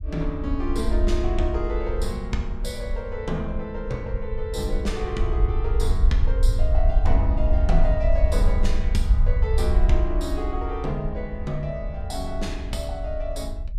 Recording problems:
low-frequency rumble; below 60 Hz, SNR -3 dB

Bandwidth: 14.5 kHz